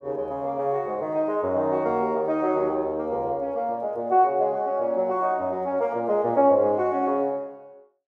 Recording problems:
none

